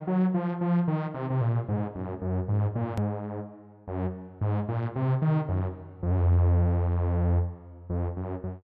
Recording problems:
click at an edit; at 3 s

